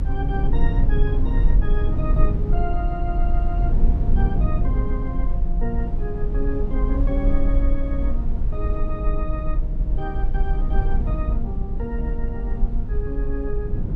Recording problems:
rumble; below 48 Hz, strongest tone 22 Hz, SNR -6 dB
wind noise; below 160 Hz, SNR 0 dB

